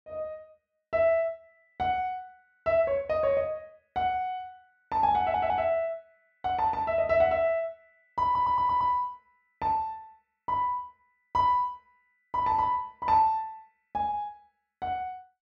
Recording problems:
stutter; at 5 s and at 8 s

